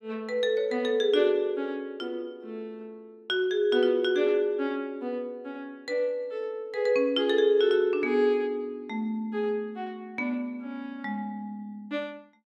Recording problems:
none

